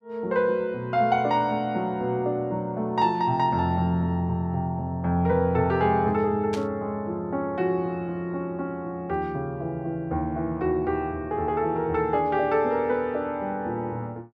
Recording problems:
static burst; at 6.5 s; peak -7 dB vs average level

